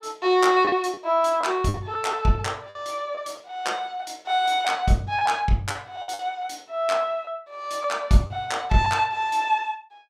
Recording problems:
lost packets; 6% of the sound replaced, filled with the last packet

